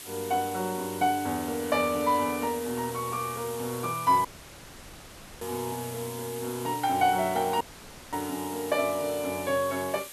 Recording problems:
background hiss; SNR 12 dB
audio cutting out; at 4.5 s for 1 s and at 7.5 s for 0.5 s

